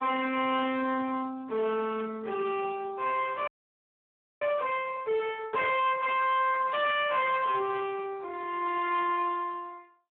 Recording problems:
telephone audio; 280 Hz to 3.4 kHz, Speex
distortion; hard clipping, signal-to-distortion ratio 8 dB
burst of static; at 2 s, at 5.5 s and at 7.5 s; peak -14 dB vs average level
frozen audio; at 3.5 s for 1 s

